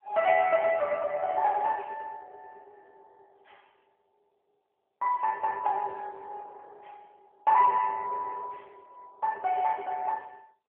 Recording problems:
phone line; 370 Hz to 3.3 kHz, AMR-NB

